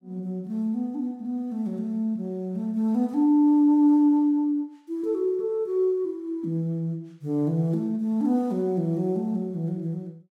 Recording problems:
none

